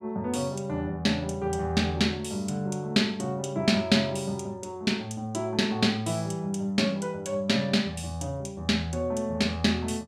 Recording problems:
none

